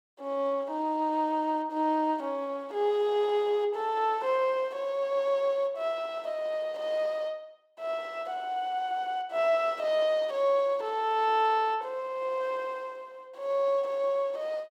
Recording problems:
none

